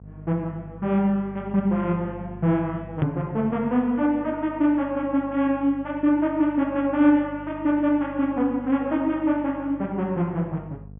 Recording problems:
treble cut off; nothing above 3.5 kHz
hum; 50 Hz, harmonics up to 500 Hz, SNR 20 dB
hard cut with a click; at 3 s

